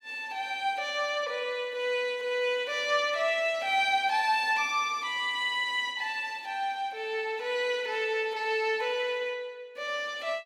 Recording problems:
none

